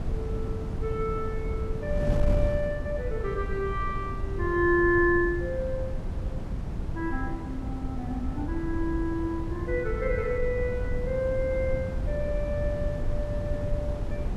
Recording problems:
wind on the microphone; below 120 Hz, SNR 3 dB

